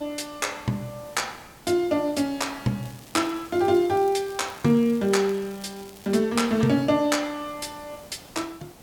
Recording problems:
background hiss; slope -5 dB per octave, SNR 22 dB
crackling; from 3 to 6 s; loose cable, SNR 24 dB

